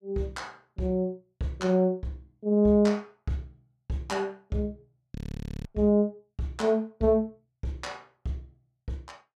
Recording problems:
audio freezing; at 5 s for 0.5 s

